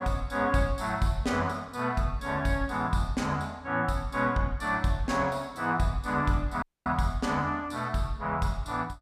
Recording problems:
audio cutting out; at 6.5 s

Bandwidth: 15 kHz